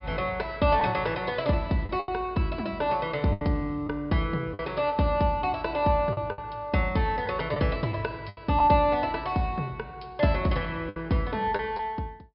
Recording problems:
treble missing; nothing above 5.5 kHz
packet loss; 5% of the sound replaced, filled with the last packet

